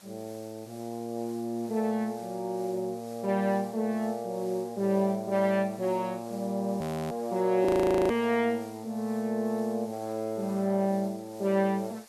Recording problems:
background hiss; slope -1 dB per octave, SNR 23 dB
audio freezing; at 7 s and at 7.5 s

